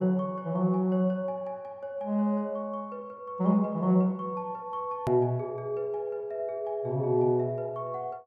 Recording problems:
click at an edit; at 5 s

